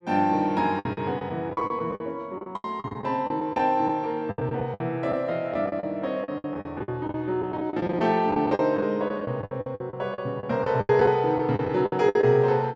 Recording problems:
lost packets; 16% of the sound replaced, filled with the last packet

